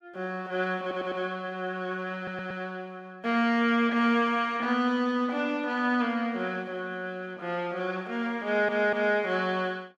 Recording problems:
stutter; at 1 s, at 2 s and at 8.5 s

